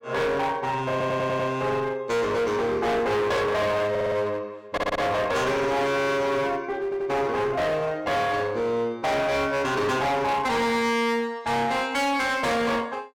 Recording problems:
distortion; hard clipping, uneven, signal-to-distortion ratio 6 dB
audio stuttering; 4 times, first at 1 s

